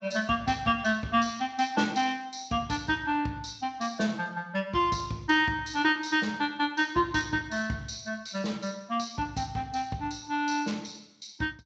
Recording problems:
codec artefacts; Speex, log-spectral distance 6 dB

